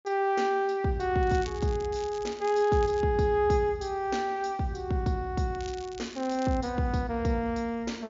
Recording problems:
low-pass filter; nothing above 7.3 kHz
crackling; from 1 to 3 s and from 5.5 to 6.5 s; loose cable, SNR 19 dB

